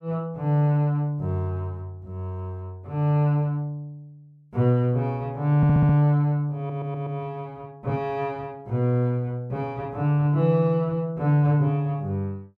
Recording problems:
audio stuttering; at 5.5 s and at 6.5 s

